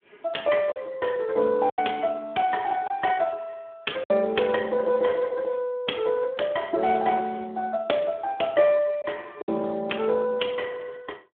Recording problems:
telephone audio; 280 Hz to 3.4 kHz, Speex
packet loss; 3% of the sound replaced, filled with silence

